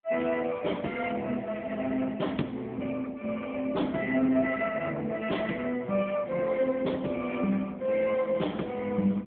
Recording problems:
phone line; 170 Hz to 3.6 kHz, AMR-NB

